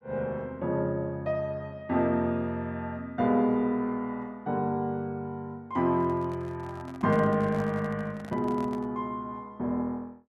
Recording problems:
handling noise; from 6 to 9 s; peak -8 dB vs average level

